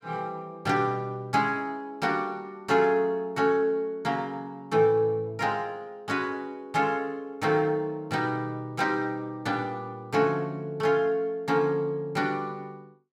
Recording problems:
none

